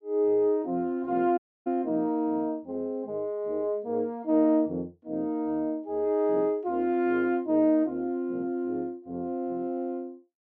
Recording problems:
dropout; at 1.5 s

